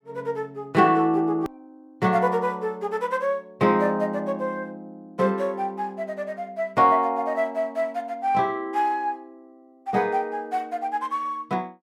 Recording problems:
click at an edit; at 1.5 s

